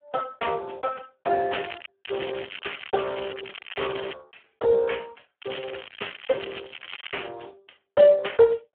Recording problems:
phone line; 300 Hz to 3.3 kHz, Speex
crackling; at 1.5 s, from 2 to 4 s and from 5.5 to 7.5 s; loose cable, SNR 13 dB

